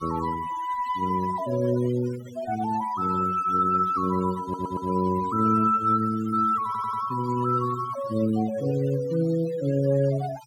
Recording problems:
noise reduction artefacts; signal-to-artefact ratio 18 dB
stutter; at 4.5 s and at 6.5 s

